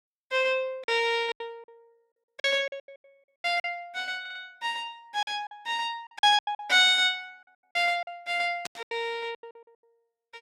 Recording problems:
packet loss; 14% of the sound replaced, filled with silence
stutter; at 4 s
burst of static; at 8.5 s; peak -4 dB vs average level

